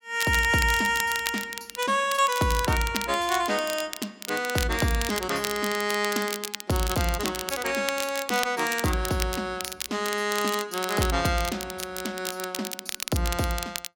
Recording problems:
crackling; vinyl, SNR 8 dB

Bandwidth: 16.5 kHz